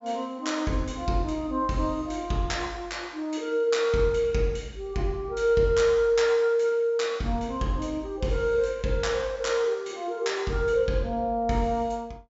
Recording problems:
treble missing; nothing above 8 kHz

